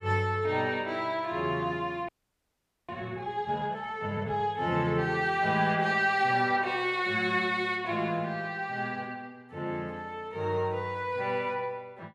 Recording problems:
audio freezing; at 2 s for 1 s

